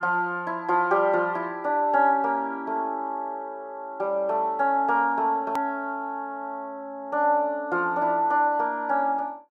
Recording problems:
edit click; at 5.5 s

